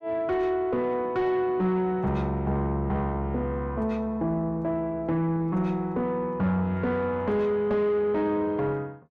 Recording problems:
distorted audio; soft clipping, signal-to-distortion ratio 11 dB

